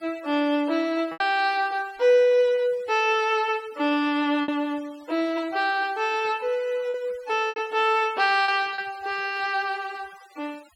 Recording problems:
denoising artefacts; signal-to-artefact ratio 25 dB
packet loss; 3% of the sound replaced, filled with repeated pitch periods

